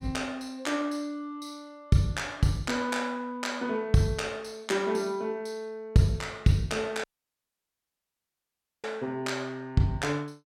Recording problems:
dropout; at 7 s for 2 s

